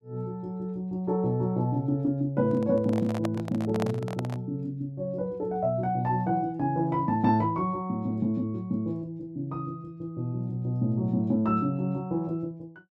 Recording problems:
microphone handling noise; from 2.5 to 4.5 s; peak 0 dB vs average level

